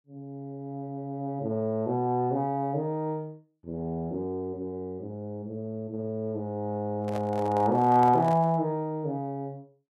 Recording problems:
handling noise; from 7 to 8.5 s; peak -6 dB vs average level

